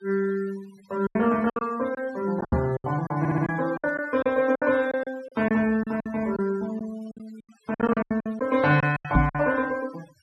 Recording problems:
noise reduction artefacts; signal-to-artefact ratio 20 dB
lost packets; 13% of the sound replaced, filled with silence
microphone thump; at 2.5 s and at 9 s; peak +6 dB vs average level
audio stuttering; at 3 s

